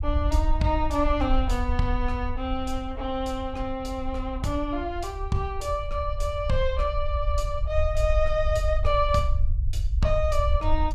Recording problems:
rumble; below 66 Hz, SNR 2 dB

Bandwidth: 14.5 kHz